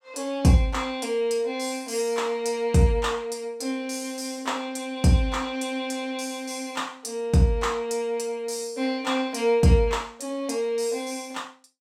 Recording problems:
none

